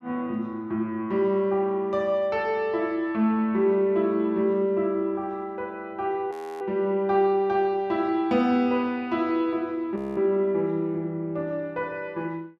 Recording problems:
frozen audio; at 6.5 s and at 10 s

